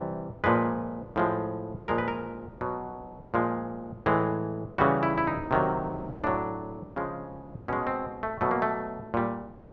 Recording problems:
wind noise; below 530 Hz, SNR 19 dB

